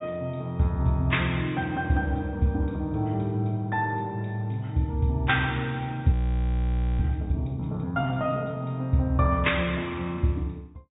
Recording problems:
treble cut off; nothing above 3.7 kHz
frozen audio; at 6 s for 1 s

